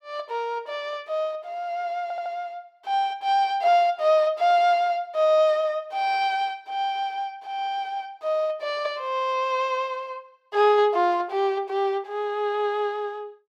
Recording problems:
stutter; at 2 s

